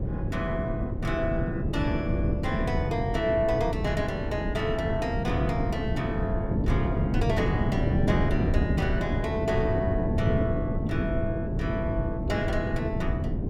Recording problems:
wind on the microphone; below 240 Hz, SNR -2 dB

